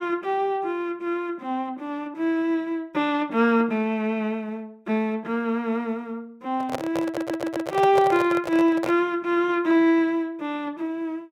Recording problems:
microphone handling noise; from 6.5 to 9 s; peak +1 dB vs average level
audio stuttering; at 7 s

